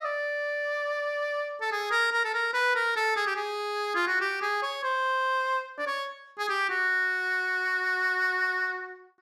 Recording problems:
none

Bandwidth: 14.5 kHz